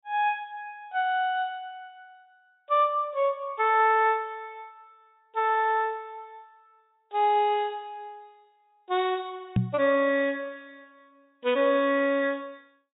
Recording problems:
low-pass filter; nothing above 4 kHz
knock on the microphone; at 9.5 s; peak +5 dB vs average level

